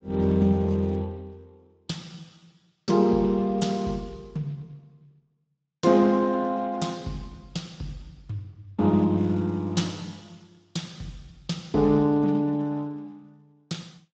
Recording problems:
lossy codec; Speex, log-spectral distance 3 dB, nothing above 7.6 kHz

